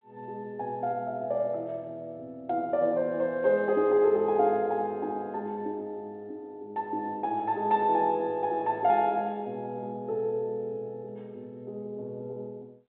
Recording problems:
telephone audio; 220 Hz to 3.6 kHz, G.726

